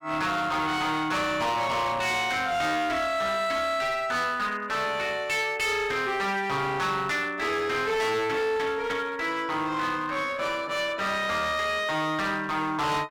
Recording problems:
distorted audio; hard clipping, uneven, signal-to-distortion ratio 7 dB

